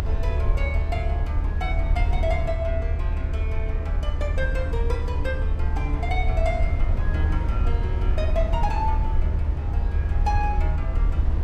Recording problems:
low-frequency rumble; below 76 Hz, SNR -6 dB

